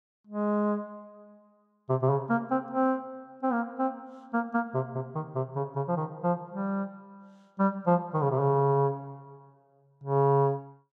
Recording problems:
none

